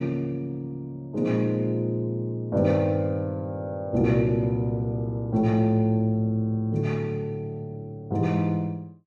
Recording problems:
none

